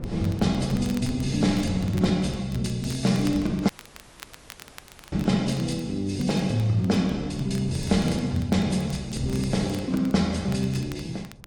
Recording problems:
lossy codec; AAC, log-spectral distance 4 dB
wind on the microphone; below 240 Hz, SNR 13 dB
crackling; vinyl, SNR 22 dB
audio cutting out; at 3.5 s for 1.5 s

